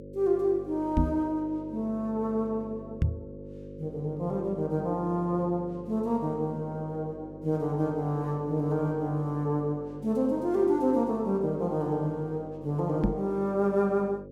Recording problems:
hum; 50 Hz, harmonics up to 550 Hz, SNR 15 dB
microphone bump; at 1 s, at 3 s and at 13 s; peak +7 dB vs average level

